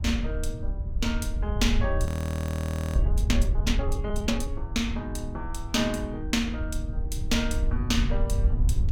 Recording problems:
wind noise; below 80 Hz, SNR -1 dB
frozen audio; at 2 s for 1 s

